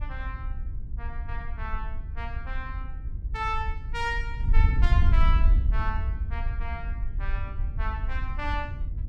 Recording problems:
wind on the microphone; below 66 Hz, SNR -6 dB

